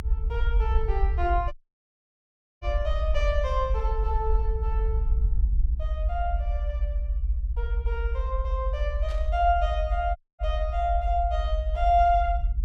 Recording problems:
low-frequency rumble; below 62 Hz, SNR -1 dB
audio cutting out; at 1.5 s for 1 s and at 10 s
burst of static; at 9 s; peak -14 dB vs average level

